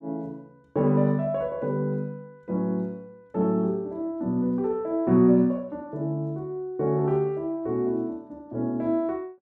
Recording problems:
none

